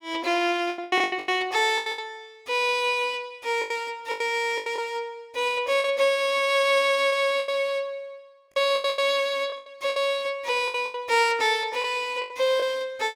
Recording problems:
packet loss; 12% of the sound replaced, filled with the last packet

